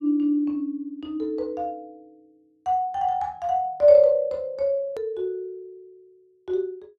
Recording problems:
click at an edit; at 5 s

